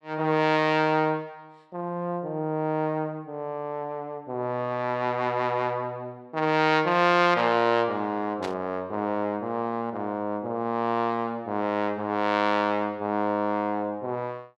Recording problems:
static burst; at 8.5 s; peak -7 dB vs average level

